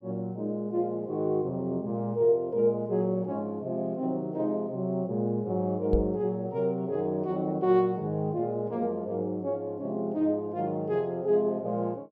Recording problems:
microphone thump; at 6 s; peak +4 dB vs average level

